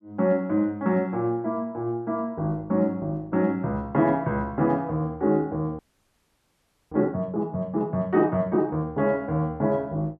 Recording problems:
audio freezing; at 6 s for 1 s

